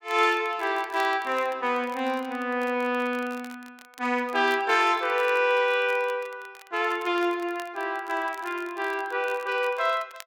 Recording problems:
crackling; vinyl, SNR 24 dB

